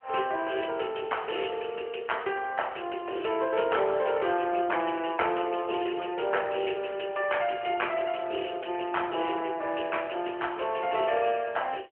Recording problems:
phone line; 280 Hz to 3.2 kHz, AMR-NB

